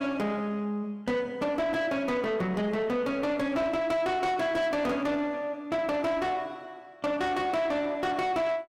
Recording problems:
distorted audio; soft clipping, signal-to-distortion ratio 10 dB

